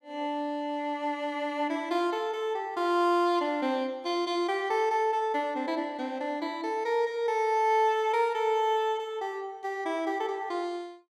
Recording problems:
none

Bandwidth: 16 kHz